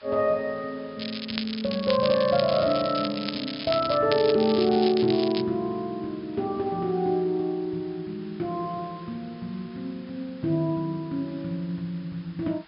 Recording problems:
treble missing; nothing above 5.5 kHz
hiss; SNR 25 dB
crackle; from 1 to 4 s and from 4 to 5.5 s; loose cable, SNR 8 dB

